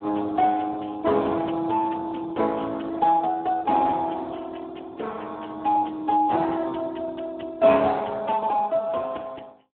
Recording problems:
telephone audio; 240 Hz to 2.2 kHz, Speex

